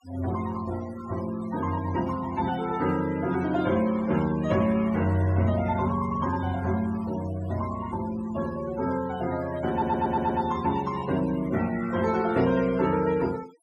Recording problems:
noise reduction artefacts; signal-to-artefact ratio 16 dB
audio stuttering; at 9.5 s

